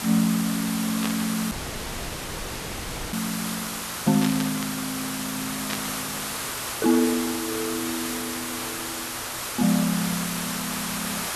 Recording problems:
electrical hum; 60 Hz, harmonics up to 1.4 kHz, SNR 25 dB
hiss; SNR 2 dB
burst of static; at 1 s, at 4 s and at 5.5 s; peak 0 dB vs average level
dropout; at 1.5 s for 1.5 s

